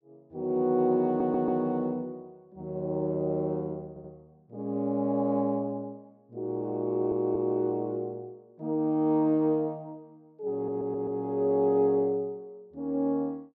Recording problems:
stutter; 4 times, first at 1 s

